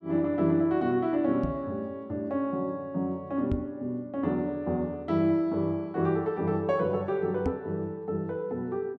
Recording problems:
knock on the microphone; at 1.5 s, at 3.5 s and at 7.5 s; peak +2 dB vs average level

